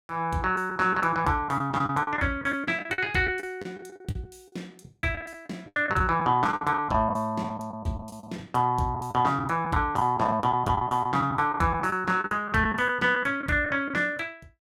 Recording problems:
lost packets; 13% of the sound replaced, filled with the last packet

